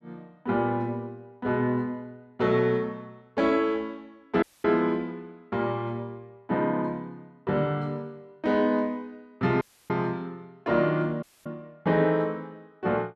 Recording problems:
dropout; at 4.5 s, at 9.5 s and at 11 s

